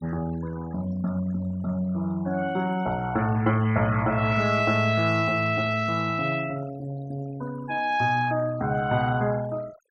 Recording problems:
noise reduction artefacts; signal-to-artefact ratio 21 dB

